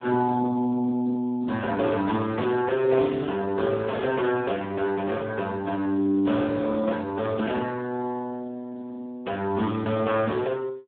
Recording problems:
telephone audio; 190 Hz to 2.8 kHz, Speex

